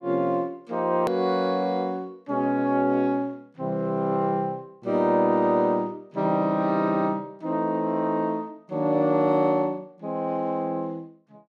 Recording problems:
click at an edit; at 1 s

